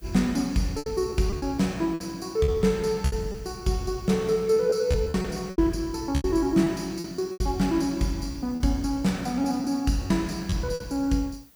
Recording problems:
background hiss; slope -2 dB per octave, SNR 28 dB
lost packets; 9% of the sound replaced, filled with repeated pitch periods

